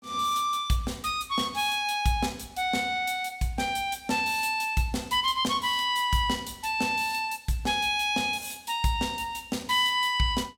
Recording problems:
none

